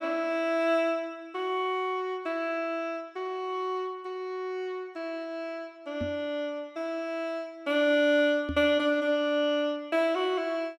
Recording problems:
knock on the microphone; at 6 s and at 8.5 s; peak -1 dB vs average level

